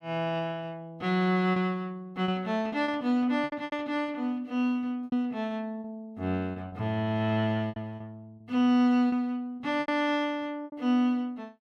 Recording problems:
packet loss; 8% of the sound replaced, filled with repeated pitch periods

